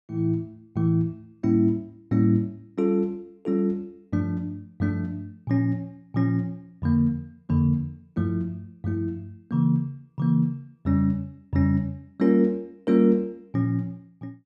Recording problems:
none

